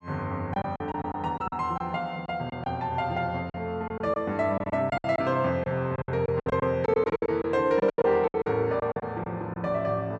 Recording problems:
lost packets; 13% of the sound replaced, filled with silence

